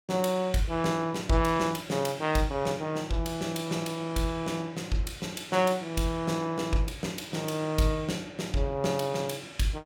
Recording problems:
none

